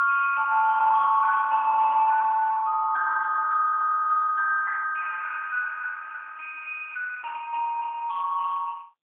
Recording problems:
phone line; 950 Hz to 2 kHz, AMR-NB, then MP3

